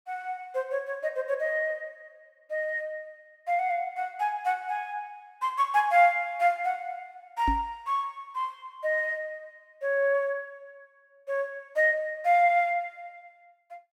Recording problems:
microphone thump; at 7.5 s; peak 0 dB vs average level

